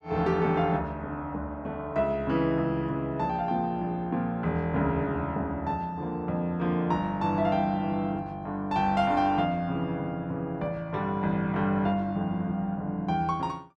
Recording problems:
none

